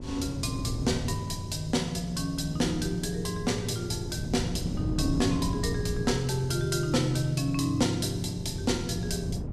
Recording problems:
hum; 60 Hz, harmonics up to 1.1 kHz, SNR 16 dB
wind on the microphone; below 210 Hz, SNR 7 dB

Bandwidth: 14.5 kHz